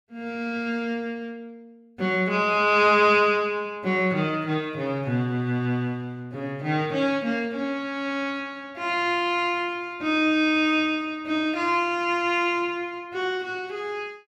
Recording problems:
none

